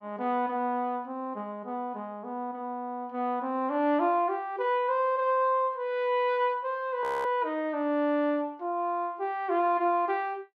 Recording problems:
frozen audio; at 7 s

